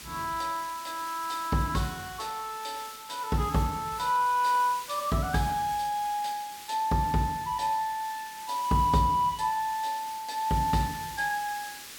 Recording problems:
background hiss; SNR 14 dB

